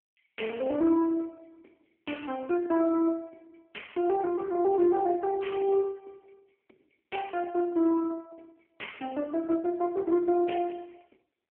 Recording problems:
telephone audio; 280 Hz to 3.2 kHz, AMR-NB

